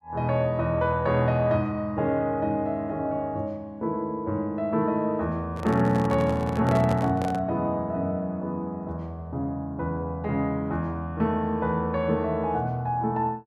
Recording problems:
microphone handling noise; from 5.5 to 7.5 s; peak -2 dB vs average level

